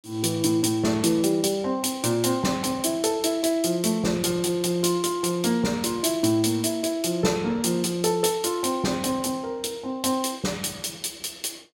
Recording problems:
none

